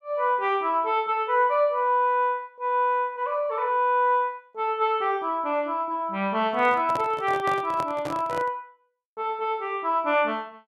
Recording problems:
handling noise; from 6.5 to 8.5 s; peak -4 dB vs average level

